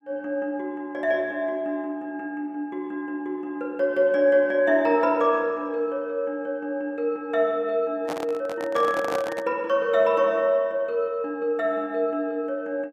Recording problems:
microphone handling noise; from 8 to 9.5 s; peak -1 dB vs average level

